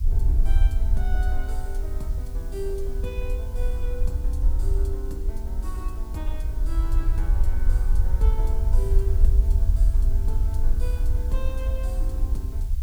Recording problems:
background hiss; slope -1 dB per octave, SNR 14 dB
low-frequency rumble; below 58 Hz, SNR -12 dB

